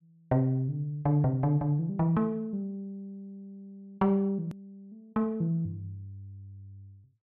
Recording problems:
edit click; at 4.5 s

